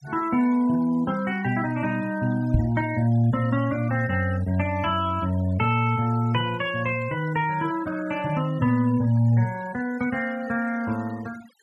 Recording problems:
denoising artefacts; signal-to-artefact ratio 20 dB
microphone thump; at 2.5 s; peak +5 dB vs average level

